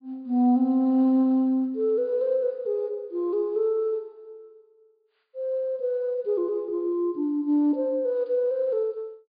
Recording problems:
treble cut off; nothing above 4.9 kHz

